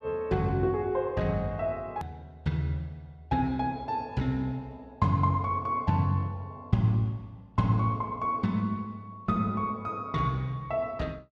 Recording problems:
hard cut with a click; at 2 s

